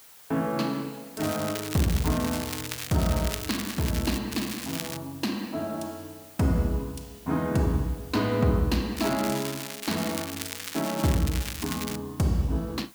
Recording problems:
hiss; slope 0 dB per octave, SNR 20 dB
crackle; from 1 to 4 s, at 4.5 s and from 9 to 12 s; loose cable, SNR 7 dB

